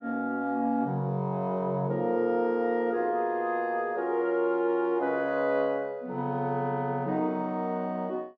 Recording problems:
none

